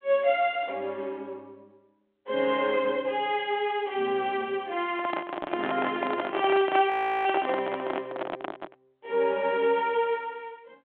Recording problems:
phone line; 220 Hz to 3.4 kHz, G.726
handling noise; from 5 to 9 s; peak 0 dB vs average level
frozen audio; at 7 s

